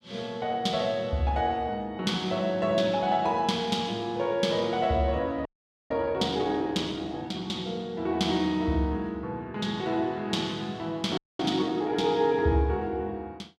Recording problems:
frozen audio; at 5.5 s and at 11 s

